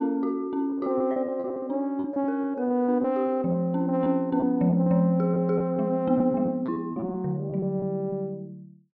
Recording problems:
lost packets; 10% of the sound replaced, filled with repeated pitch periods

